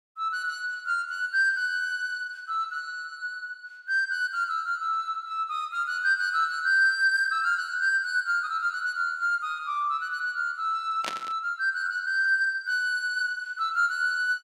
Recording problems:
burst of static; at 11 s; peak -1 dB vs average level

